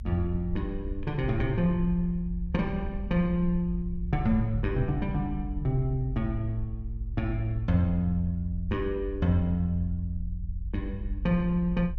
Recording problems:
low-frequency rumble; below 64 Hz, SNR 8 dB

